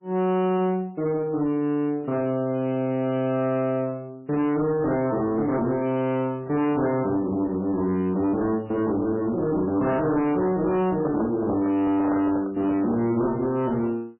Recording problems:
lossy compression; MP3, log-spectral distance 2 dB, nothing above 2.6 kHz
distorted audio; hard clipping, uneven, signal-to-distortion ratio 10 dB
handling noise; from 11 to 13 s; peak -1 dB vs average level

